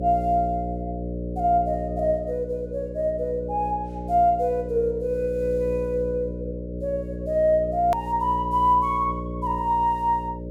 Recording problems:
electrical hum; 60 Hz, harmonics up to 600 Hz, SNR 9 dB
edit click; at 8 s

